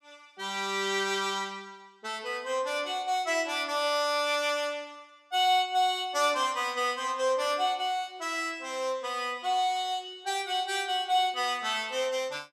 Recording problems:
none

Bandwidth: 15 kHz